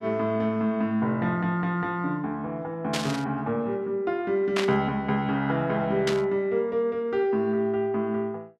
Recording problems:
static burst; at 3 s, at 4.5 s and at 6 s; peak +2 dB vs average level

